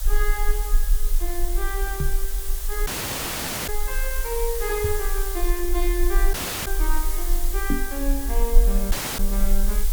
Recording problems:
background hiss; SNR 2 dB
low-frequency rumble; below 36 Hz, strongest tone 22 Hz, SNR -3 dB
knock on the microphone; at 2 s, at 5 s and at 7.5 s; peak +10 dB vs average level
dropout; at 3 s for 1 s, at 6.5 s and at 9 s

